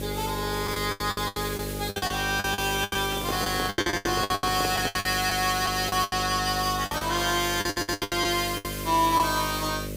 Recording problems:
electrical hum; 50 Hz, harmonics up to 600 Hz, SNR 9 dB
hiss; slope +2 dB per octave, SNR 11 dB
lost packets; 17% of the sound replaced, filled with the last packet
handling noise; from 3 to 5 s; peak -2 dB vs average level
audio stuttering; at 7.5 s

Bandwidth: 15.5 kHz